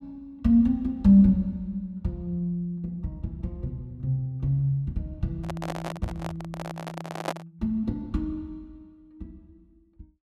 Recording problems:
handling noise; from 5.5 to 7.5 s; peak +1 dB vs average level

